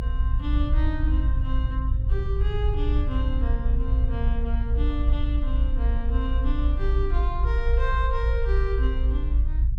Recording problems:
low-frequency rumble; below 58 Hz, SNR -8 dB

